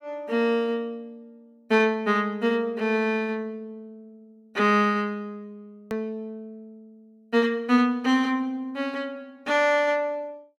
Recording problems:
click at an edit; at 6 s

